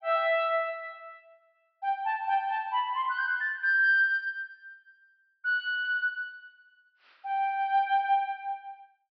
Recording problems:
treble cut off; nothing above 5.5 kHz

